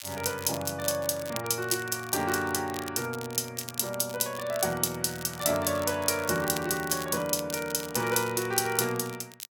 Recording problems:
crackle; vinyl, SNR 14 dB

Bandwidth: 17.5 kHz